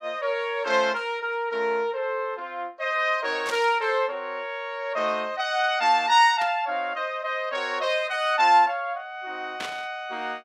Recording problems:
static burst; at 3.5 s, at 6.5 s and at 9.5 s; peak -5 dB vs average level

